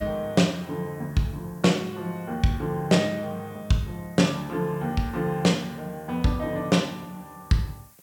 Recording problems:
hiss; SNR 27 dB

